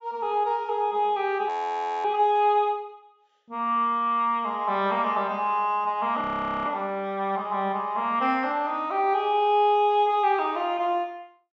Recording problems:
low-pass filter; nothing above 8 kHz
frozen audio; at 1.5 s for 0.5 s and at 6 s

